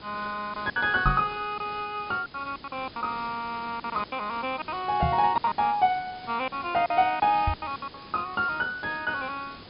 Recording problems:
treble missing; nothing above 5.1 kHz
hiss; SNR 18 dB
lost packets; 11% of the sound replaced, filled with silence
microphone thump; at 1 s, at 5 s and at 7.5 s; peak +4 dB vs average level

